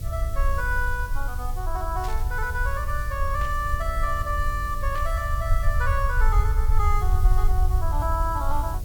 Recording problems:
electrical hum; 60 Hz, harmonics up to 660 Hz, SNR 16 dB
background hiss; slope +2 dB per octave, SNR 16 dB
rumble; below 62 Hz, SNR -2 dB
static burst; at 2 s, at 3.5 s and at 5 s; peak -8 dB vs average level

